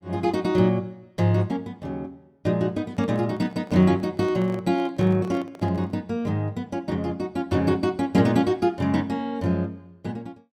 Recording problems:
handling noise; from 3 to 6 s; peak -12 dB vs average level

